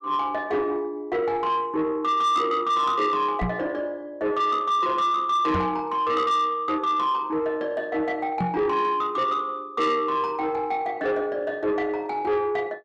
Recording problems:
distorted audio; soft clipping, signal-to-distortion ratio 11 dB
microphone thump; at 3.5 s, at 5.5 s and at 8.5 s; peak +1 dB vs average level

